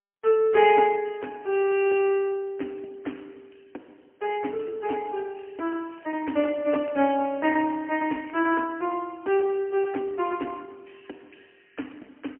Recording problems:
phone line; 220 Hz to 2.9 kHz, AMR-NB, then MP3
crackling; from 5.5 to 8.5 s; loose cable, SNR 27 dB

